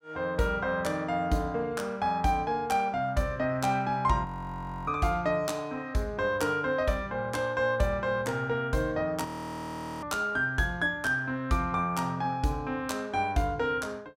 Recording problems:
audio freezing; at 4.5 s for 0.5 s and at 9.5 s for 1 s

